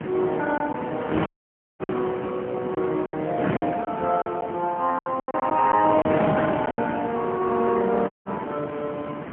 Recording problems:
telephone audio; 190 Hz to 3.2 kHz, AMR-NB, then MP3
wind noise; below 990 Hz, SNR 7 dB
packet loss; 8% of the sound replaced, filled with silence
audio cutting out; at 1.5 s for 0.5 s and at 8 s

